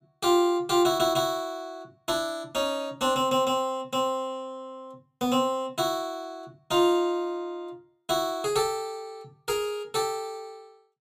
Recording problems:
none

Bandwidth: 15 kHz